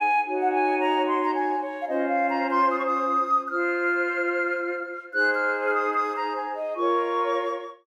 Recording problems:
none

